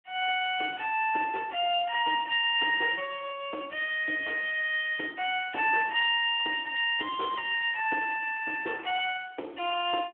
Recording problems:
phone line; 260 Hz to 3.3 kHz, Speex

